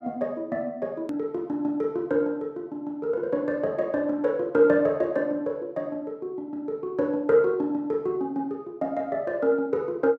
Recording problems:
click at an edit; at 1 s

